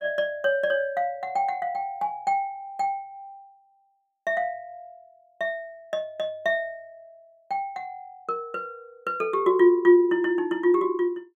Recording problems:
none

